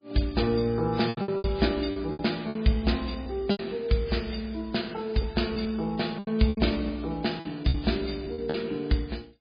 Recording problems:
codec artefacts; MP3, log-spectral distance 5 dB, nothing above 4.8 kHz
packet loss; 9% of the sound replaced, filled with repeated pitch periods

